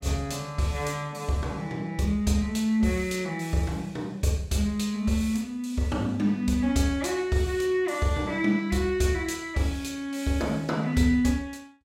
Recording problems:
none

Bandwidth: 16 kHz